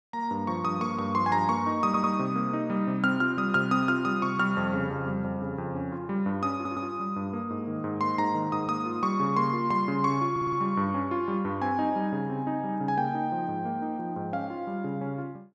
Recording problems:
audio stuttering; at 2 s, at 6.5 s and at 10 s

